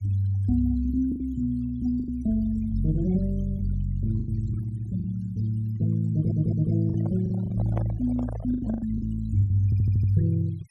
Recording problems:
noise reduction artefacts; signal-to-artefact ratio 24 dB
packet loss; 7% of the sound replaced, filled with the last packet
stutter; at 6 s and at 9.5 s
microphone handling noise; from 7 to 9 s; peak -5 dB vs average level

